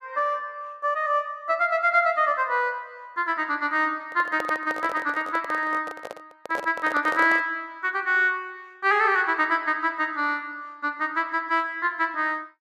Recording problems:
microphone handling noise; from 4 to 7.5 s; peak -4 dB vs average level

